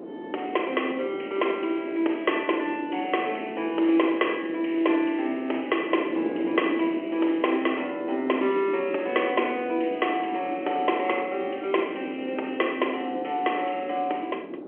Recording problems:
telephone audio; 280 Hz to 3.2 kHz, G.711
wind noise; below 460 Hz, SNR 9 dB

